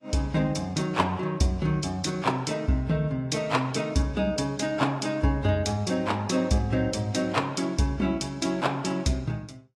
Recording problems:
lossy compression; AAC, log-spectral distance 2 dB, nothing above 11 kHz

